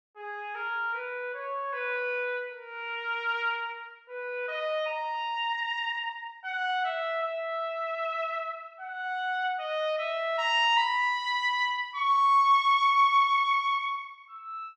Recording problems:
none

